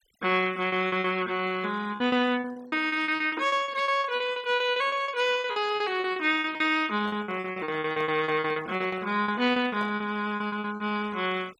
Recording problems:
denoising artefacts; signal-to-artefact ratio 23 dB
lost packets; 18% of the sound replaced, filled with repeated pitch periods
handling noise; from 7 to 10 s; peak -10 dB vs average level

